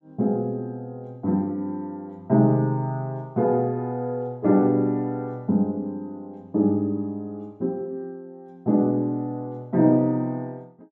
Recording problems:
none

